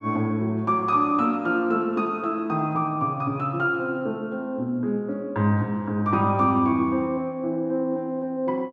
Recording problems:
none

